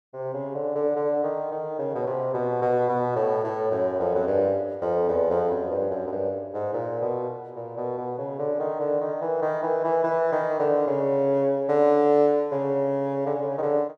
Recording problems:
none

